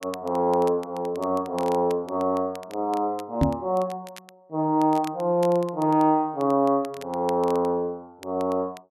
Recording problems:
crackling; vinyl, SNR 23 dB
knock on the microphone; at 3.5 s; peak +6 dB vs average level

